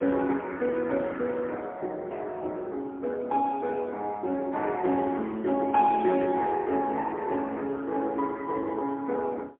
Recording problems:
telephone audio; 240 Hz to 3.5 kHz, AMR-NB, then MP3

